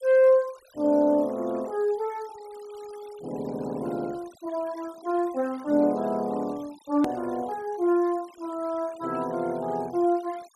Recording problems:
noise reduction artefacts; signal-to-artefact ratio 25 dB
click at an edit; at 7 s

